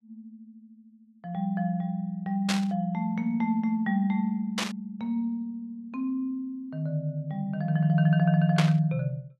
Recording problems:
burst of static; at 2.5 s, at 4.5 s and at 8.5 s; peak +4 dB vs average level

